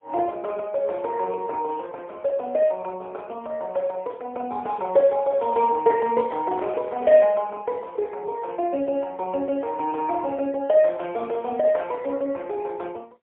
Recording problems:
phone line; 300 Hz to 3.3 kHz, AMR-NB, then MP3
handling noise; from 5.5 to 7.5 s; peak -10 dB vs average level

